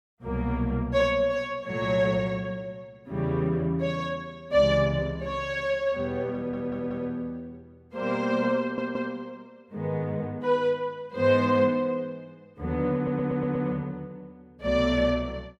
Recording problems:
audio stuttering; at 6.5 s, at 8.5 s and at 13 s

